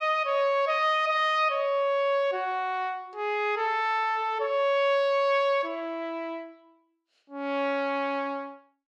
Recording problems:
none

